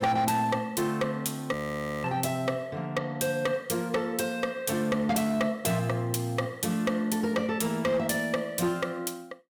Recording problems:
distortion; hard clipping, signal-to-distortion ratio 11 dB
frozen audio; at 1.5 s for 0.5 s

